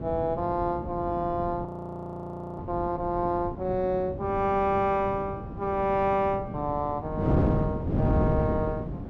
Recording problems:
wind noise; below 310 Hz, SNR 4 dB
frozen audio; at 1.5 s for 1 s

